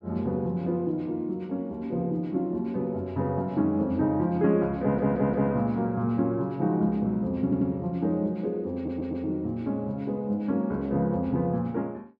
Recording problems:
audio stuttering; at 5 s, at 7.5 s and at 9 s

